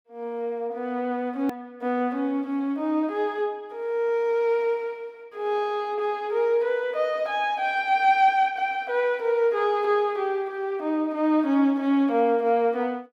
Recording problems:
hard cut with a click; at 1.5 s

